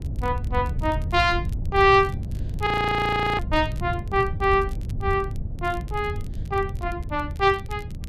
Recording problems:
low-frequency rumble; below 120 Hz, SNR 7 dB
crackling; vinyl, SNR 29 dB
audio freezing; at 2.5 s for 0.5 s

